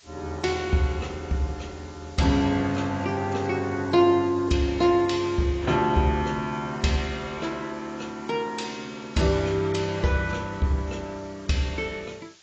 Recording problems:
lossy codec; AAC, log-spectral distance 5 dB, nothing above 7.6 kHz
hiss; slope +2 dB per octave, SNR 25 dB

